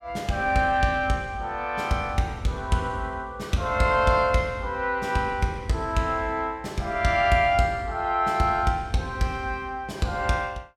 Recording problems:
none

